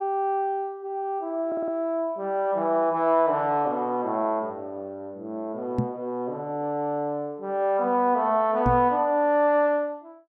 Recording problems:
stutter; at 1.5 s
knock on the microphone; at 6 s and at 8.5 s; peak +3 dB vs average level

